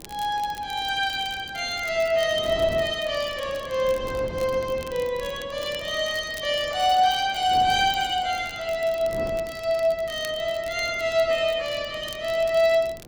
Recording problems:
wind noise; below 490 Hz, SNR 18 dB
crackling; vinyl, SNR 21 dB

